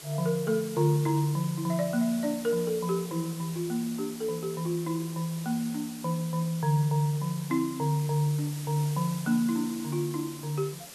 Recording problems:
hiss; slope -1 dB per octave, SNR 14 dB

